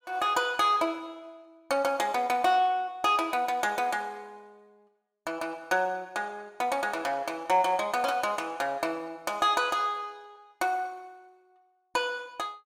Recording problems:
none

